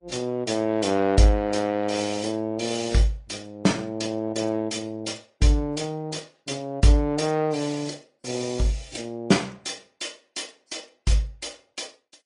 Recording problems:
codec artefacts; MP3, then AAC, log-spectral distance 5 dB, nothing above 9.8 kHz

